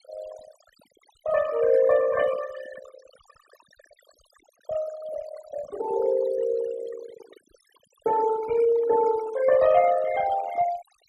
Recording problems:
noise reduction artefacts; signal-to-artefact ratio 16 dB

